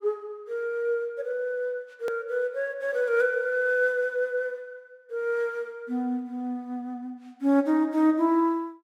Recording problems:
edit click; at 2 s

